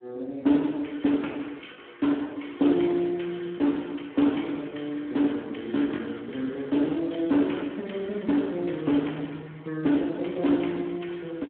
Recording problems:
phone line; 220 Hz to 3.3 kHz, Speex
lost packets; 1.8% of the sound replaced, filled with the last packet

